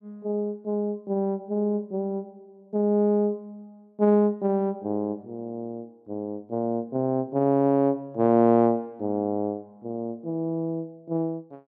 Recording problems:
none

